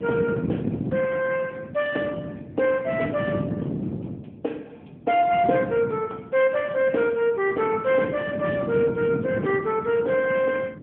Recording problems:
telephone audio; 220 Hz to 3.5 kHz, AMR-NB
wind noise; below 330 Hz, SNR 8 dB

